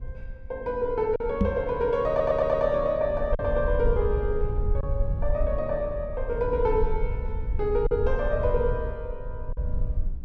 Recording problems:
low-frequency rumble; below 66 Hz, SNR 6 dB
packet loss; 2% of the sound replaced, filled with silence
microphone thump; at 1.5 s; peak +6 dB vs average level
stutter; at 2 s

